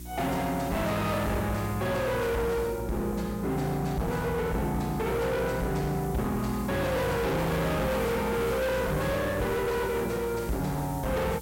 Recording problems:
distorted audio; hard clipping, signal-to-distortion ratio 6 dB
electrical hum; 60 Hz, harmonics up to 360 Hz, SNR 13 dB
background hiss; SNR 17 dB

